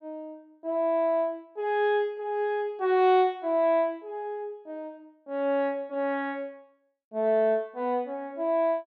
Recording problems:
none

